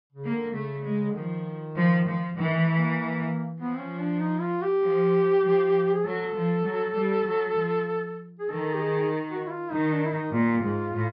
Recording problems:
treble cut off; nothing above 5.5 kHz

